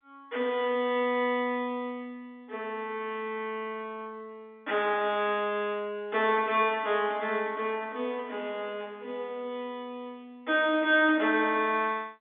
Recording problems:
phone line; 240 Hz to 3.7 kHz, G.711

